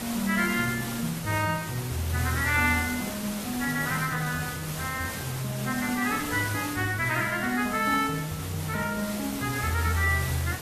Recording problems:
codec artefacts; AAC, log-spectral distance 9 dB, nothing above 14.1 kHz
hiss; slope -3 dB per octave, SNR 7 dB

